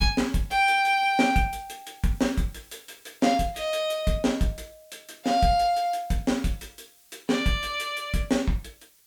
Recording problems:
background hiss; SNR 29 dB

